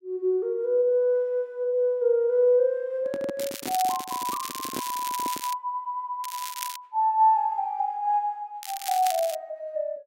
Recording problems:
handling noise; from 3 to 5.5 s; peak -4 dB vs average level
crackling; from 3.5 to 5.5 s, at 6 s and at 8.5 s; loose cable, SNR 10 dB

